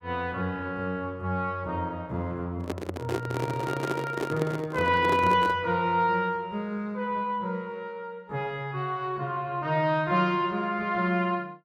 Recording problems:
handling noise; from 2.5 to 5.5 s; peak +3 dB vs average level

